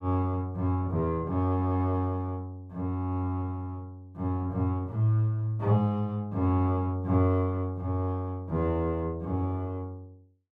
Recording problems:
none

